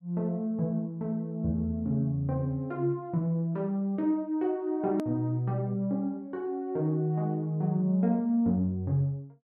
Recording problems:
hard cut with a click; at 5 s

